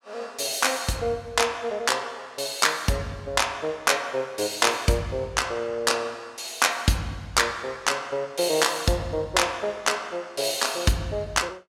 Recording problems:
none

